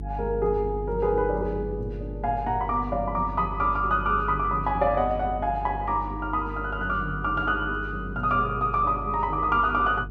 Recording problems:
hum; 50 Hz, harmonics up to 450 Hz, SNR 10 dB

